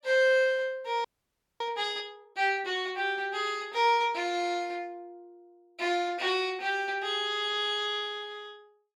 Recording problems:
frozen audio; at 1 s for 0.5 s

